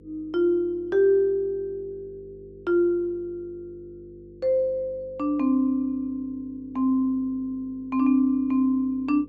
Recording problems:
hum; 50 Hz, harmonics up to 500 Hz, SNR 25 dB

